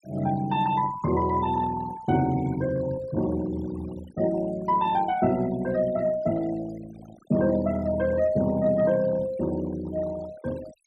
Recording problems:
noise reduction artefacts; signal-to-artefact ratio 19 dB

